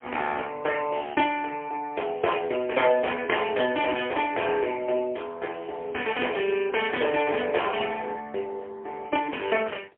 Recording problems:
phone line; 320 Hz to 3.3 kHz, AMR-NB, then MP3

